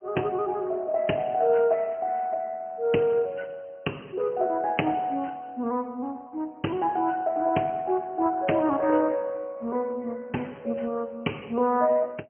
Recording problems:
telephone audio; 190 Hz to 3.1 kHz, AMR-NB

